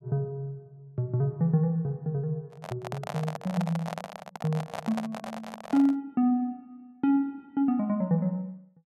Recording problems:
handling noise; from 2.5 to 6 s; peak -2 dB vs average level

